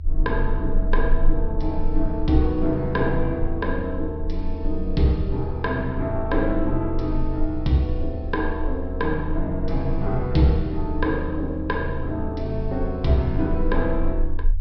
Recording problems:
treble missing; nothing above 5.5 kHz
low-frequency rumble; below 36 Hz, strongest tone 20 Hz, SNR 5 dB

